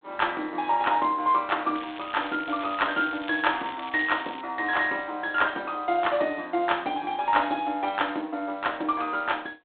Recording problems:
telephone audio; 240 Hz to 3.7 kHz, G.726
crackle; from 2 to 4.5 s; loose cable, SNR 16 dB

